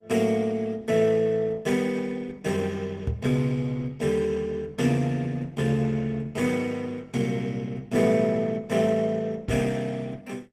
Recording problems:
lossy compression; Opus, log-spectral distance 3 dB, nothing above 15.5 kHz
microphone bump; at 3 s and at 9.5 s; peak +3 dB vs average level

